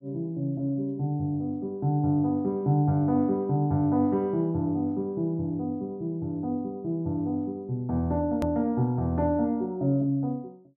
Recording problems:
edit click; at 8.5 s

